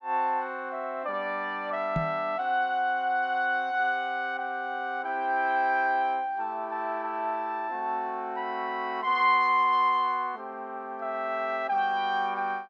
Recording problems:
microphone thump; at 2 s; peak +1 dB vs average level

